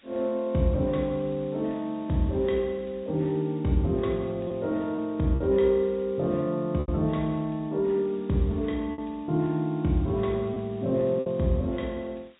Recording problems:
treble cut off; nothing above 4 kHz
hiss; SNR 30 dB
packet loss; 3% of the sound replaced, filled with repeated pitch periods

